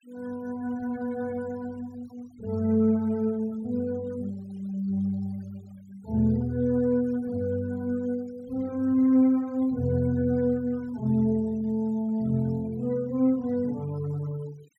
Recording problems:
noise reduction artefacts; signal-to-artefact ratio 28 dB

